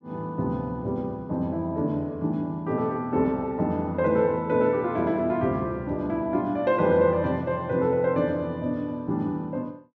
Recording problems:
none

